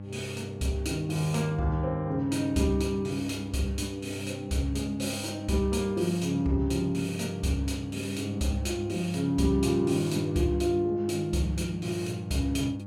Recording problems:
hum; 50 Hz, harmonics up to 900 Hz, SNR 11 dB

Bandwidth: 16 kHz